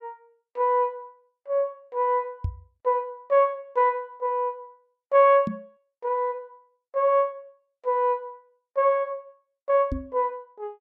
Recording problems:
microphone thump; at 2.5 s, at 5.5 s and at 10 s; peak 0 dB vs average level

